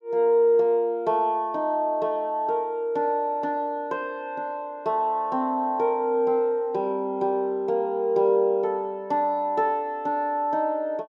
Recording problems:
none

